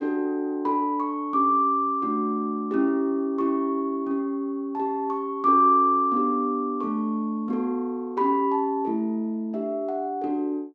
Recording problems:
none

